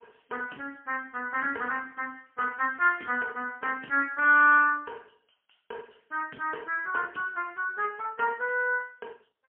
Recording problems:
telephone audio; 300 Hz to 3.1 kHz, AMR-NB, then MP3

